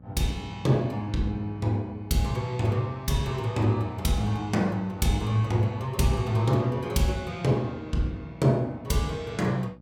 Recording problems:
hum; 60 Hz, harmonics up to 840 Hz, SNR 23 dB

